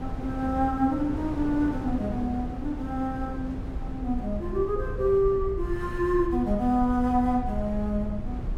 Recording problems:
mains hum; 60 Hz, harmonics up to 480 Hz, SNR 19 dB
low-frequency rumble; below 72 Hz, SNR 11 dB
wind on the microphone; below 320 Hz, SNR 11 dB

